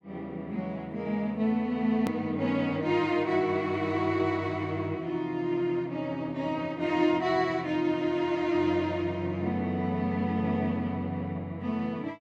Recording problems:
hard cut with a click; at 2 s

